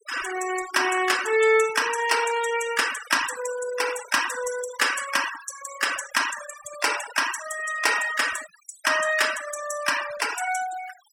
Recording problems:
noise reduction artefacts; signal-to-artefact ratio 9 dB

